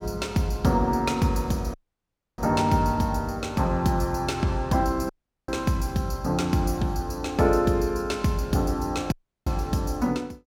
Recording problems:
dropout; at 1.5 s for 0.5 s, at 5 s and at 9 s

